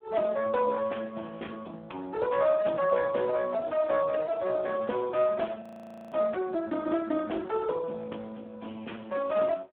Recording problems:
telephone audio; 240 Hz to 2.2 kHz, Speex
audio freezing; at 5.5 s for 0.5 s

